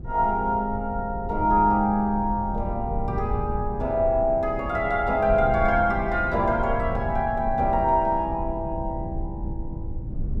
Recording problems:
low-frequency rumble; below 110 Hz, SNR 9 dB

